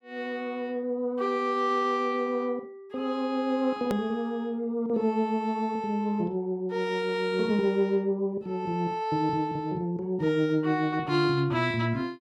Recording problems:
hard cut with a click; at 4 s

